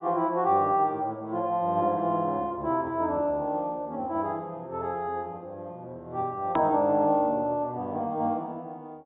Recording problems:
low-pass filter; nothing above 4 kHz
edit click; at 6.5 s

